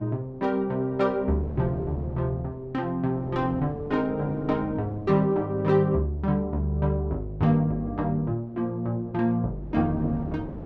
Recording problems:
wind on the microphone; below 410 Hz, SNR 16 dB

